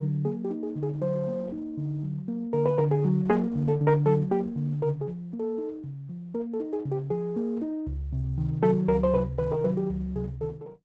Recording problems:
codec artefacts; Opus, log-spectral distance 2 dB

